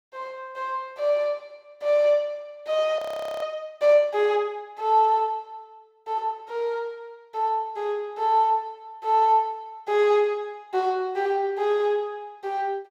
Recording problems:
frozen audio; at 3 s

